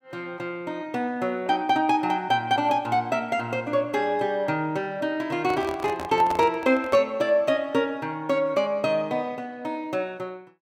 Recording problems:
handling noise; from 5.5 to 7 s; peak -4 dB vs average level

